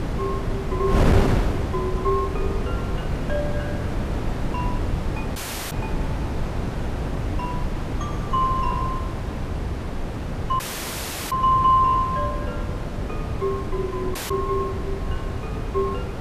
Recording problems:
wind on the microphone; below 320 Hz, SNR 2 dB
audio cutting out; at 5.5 s, at 11 s for 0.5 s and at 14 s

